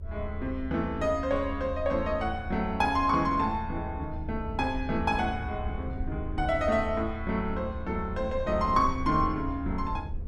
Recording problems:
low-frequency rumble; below 78 Hz, SNR 8 dB

